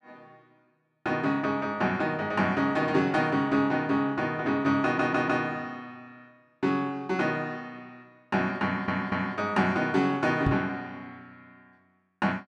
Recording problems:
audio stuttering; at 5 s and at 8.5 s
microphone bump; at 10 s; peak +3 dB vs average level

